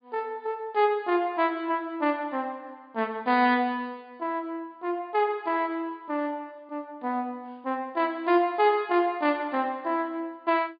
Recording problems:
low-pass filter; nothing above 4.9 kHz

